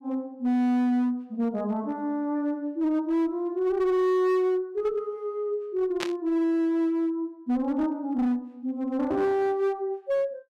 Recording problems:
distortion; hard clipping, uneven, signal-to-distortion ratio 10 dB
static burst; at 6 s; peak 0 dB vs average level

